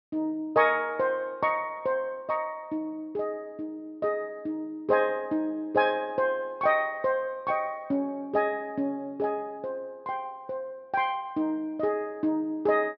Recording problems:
treble missing; nothing above 5.6 kHz

